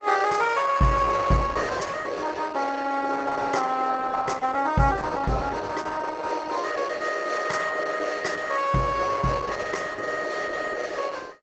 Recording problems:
lossy compression; Opus, log-spectral distance 5 dB, nothing above 7.8 kHz

